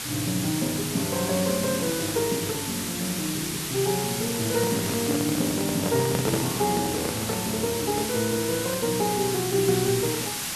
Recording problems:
hiss; slope +1 dB per octave, SNR 2 dB
microphone handling noise; from 4.5 to 7.5 s; peak +3 dB vs average level

